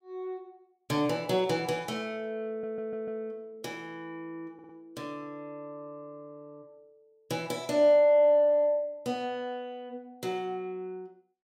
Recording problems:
stutter; at 2.5 s and at 4.5 s

